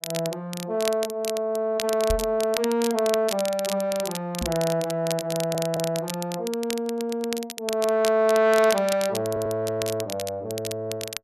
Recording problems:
crackling; vinyl, SNR 9 dB
microphone bump; at 2 s and at 4.5 s; peak 0 dB vs average level
stutter; at 5.5 s, at 7 s and at 9.5 s

